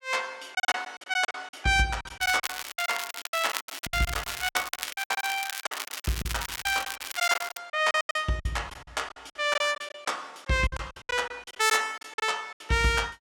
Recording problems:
lost packets; 19% of the sound replaced, filled with silence
crackling; from 2 to 7.5 s; loose cable, SNR 6 dB

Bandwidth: 17 kHz